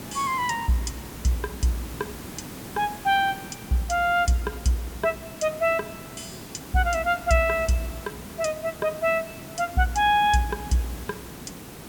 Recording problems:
background hiss; slope -5 dB per octave, SNR 14 dB

